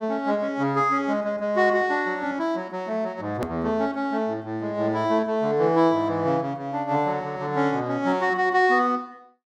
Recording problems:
hard cut with a click; at 3.5 s

